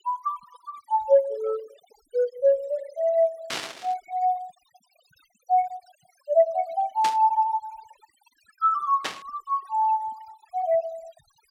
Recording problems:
noise reduction artefacts; signal-to-artefact ratio 22 dB
burst of static; at 3.5 s, at 7 s and at 9 s; peak 0 dB vs average level

